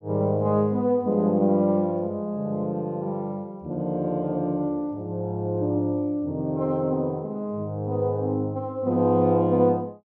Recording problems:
none

